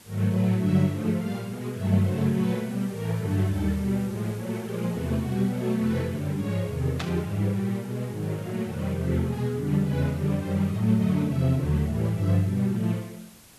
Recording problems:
background hiss; slope -2 dB per octave, SNR 23 dB
static burst; at 7 s; peak -2 dB vs average level

